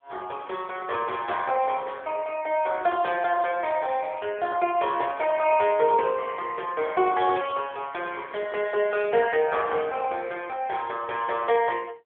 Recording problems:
phone line; 320 Hz to 3.4 kHz, AMR-NB

